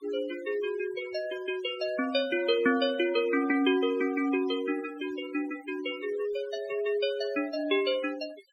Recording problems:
denoising artefacts; signal-to-artefact ratio 17 dB

